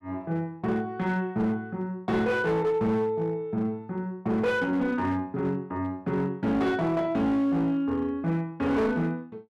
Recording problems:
distorted audio; hard clipping, uneven, signal-to-distortion ratio 11 dB

